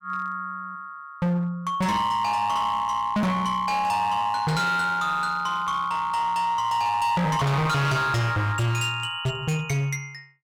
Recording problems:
distortion; hard clipping, uneven, signal-to-distortion ratio 6 dB

